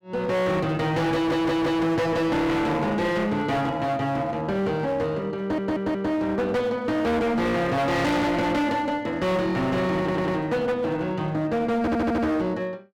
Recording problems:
distorted audio; hard clipping, uneven, signal-to-distortion ratio 6 dB
audio stuttering; 4 times, first at 1 s

